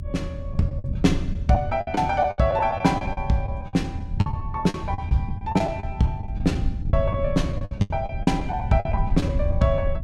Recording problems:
low-frequency rumble; below 100 Hz, SNR 6 dB
lost packets; 15% of the sound replaced, filled with the last packet

